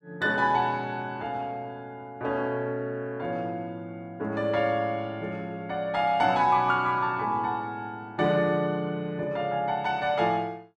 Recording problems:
none

